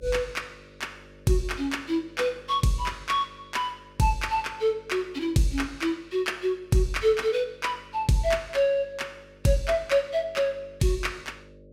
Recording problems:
hum; 50 Hz, harmonics up to 600 Hz, SNR 25 dB

